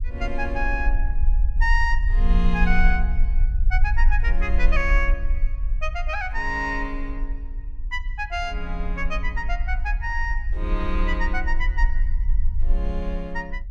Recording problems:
low-frequency rumble; below 44 Hz, strongest tone 20 Hz, SNR -2 dB

